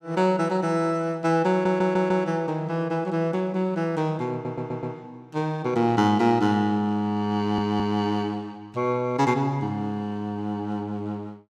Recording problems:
stutter; at 1.5 s, at 4.5 s and at 7.5 s

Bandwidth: 16.5 kHz